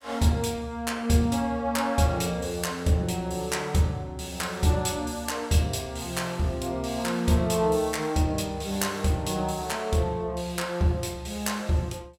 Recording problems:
none

